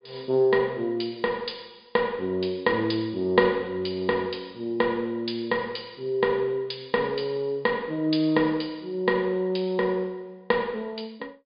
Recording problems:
low-pass filter; nothing above 5 kHz

